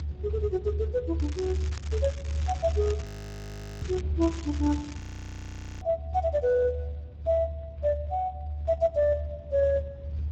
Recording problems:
lossy codec; Speex, log-spectral distance 2 dB
rumble; below 78 Hz, strongest tone 74 Hz, SNR 5 dB
crackle; from 1 to 4 s and at 4 s; loose cable, SNR 16 dB
frozen audio; at 3 s for 1 s and at 5 s for 1 s

